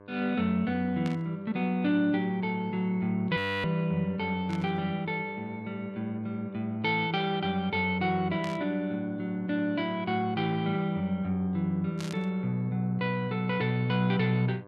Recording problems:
hum; 50 Hz, harmonics up to 2.1 kHz, SNR 22 dB
static burst; 4 times, first at 1 s; peak -8 dB vs average level
audio freezing; at 3.5 s

